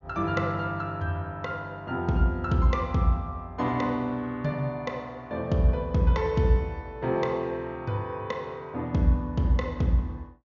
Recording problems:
low-pass filter; nothing above 7 kHz

